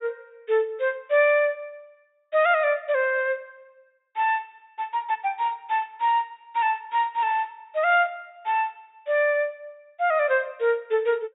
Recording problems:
treble cut off; nothing above 4 kHz

